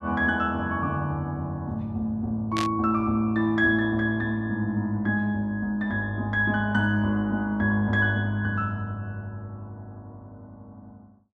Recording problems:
static burst; at 2.5 s; peak -2 dB vs average level

